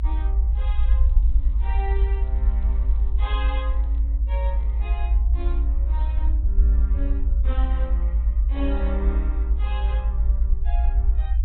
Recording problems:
treble missing; nothing above 4 kHz
rumble; below 56 Hz, strongest tone 56 Hz, SNR -14 dB
crackle; at 0.5 s, from 1 to 4 s and at 4.5 s; loose cable, SNR 29 dB

